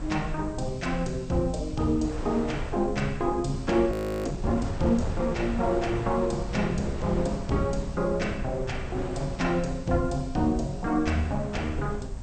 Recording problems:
lossy compression; MP2, log-spectral distance 4 dB, nothing above 15.5 kHz
background hiss; slope +3 dB per octave, SNR 27 dB
rumble; below 90 Hz, SNR 11 dB
wind noise; below 900 Hz, SNR 13 dB
audio freezing; at 4 s

